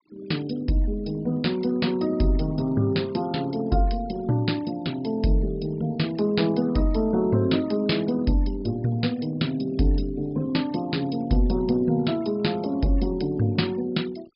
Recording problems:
treble cut off; nothing above 5.5 kHz
denoising artefacts; signal-to-artefact ratio 24 dB

